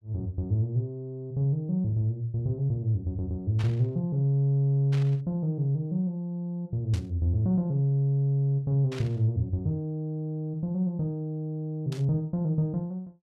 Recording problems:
burst of static; 5 times, first at 3.5 s; peak -9 dB vs average level

